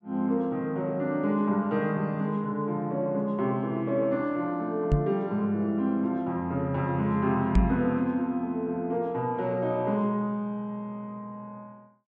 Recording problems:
microphone thump; at 5 s and at 7.5 s; peak +9 dB vs average level

